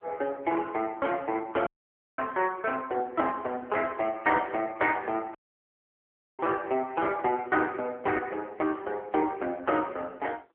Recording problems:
phone line; 280 Hz to 3.6 kHz, AMR-NB
audio cutting out; at 1.5 s for 0.5 s and at 5.5 s for 1 s

